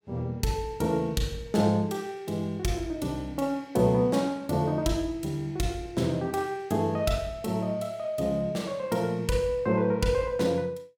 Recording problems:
none

